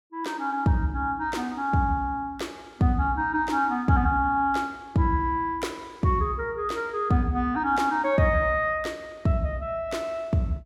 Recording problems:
none

